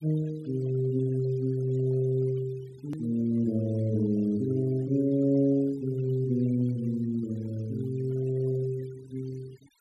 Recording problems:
noise reduction artefacts; signal-to-artefact ratio 24 dB
hard cut with a click; at 3 s

